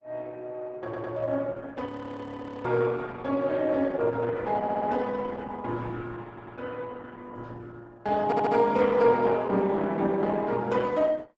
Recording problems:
lossy codec; Opus, log-spectral distance 3 dB, nothing above 7.8 kHz
audio stuttering; 4 times, first at 1 s
audio freezing; at 2 s for 1 s

